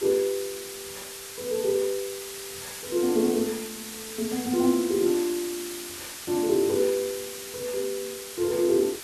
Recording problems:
background hiss; slope +1 dB per octave, SNR 10 dB

